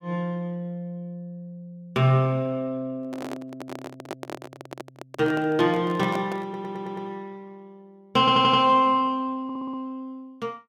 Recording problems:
microphone handling noise; from 3 to 7 s; peak -5 dB vs average level
stutter; at 6.5 s, at 8 s and at 9.5 s

